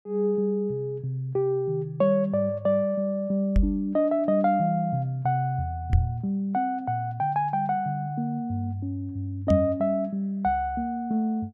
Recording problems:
microphone bump; at 3.5 s, at 6 s and at 9.5 s; peak +7 dB vs average level

